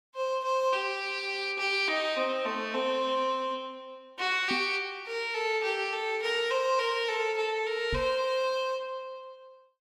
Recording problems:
microphone bump; at 4.5 s and at 8 s; peak -2 dB vs average level

